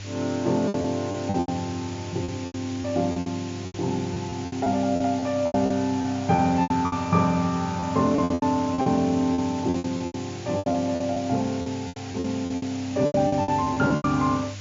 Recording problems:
treble missing; nothing above 7.1 kHz
hum; 50 Hz, harmonics up to 600 Hz, SNR 14 dB
hiss; slope +1 dB per octave, SNR 16 dB
lost packets; 16% of the sound replaced, filled with repeated pitch periods

